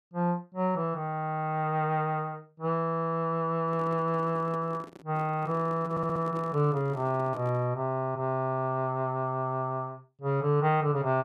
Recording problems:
handling noise; from 3.5 to 7.5 s; peak -11 dB vs average level
audio stuttering; at 6 s

